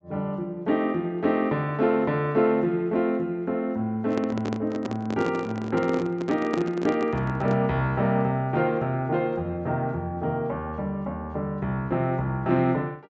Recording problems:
treble missing; nothing above 8 kHz
handling noise; from 4 to 7.5 s; peak +1 dB vs average level

